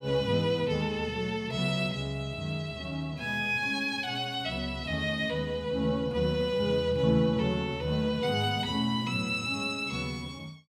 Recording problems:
none

